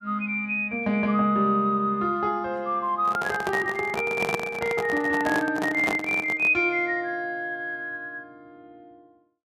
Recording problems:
microphone handling noise; from 3 to 6.5 s; peak +1 dB vs average level

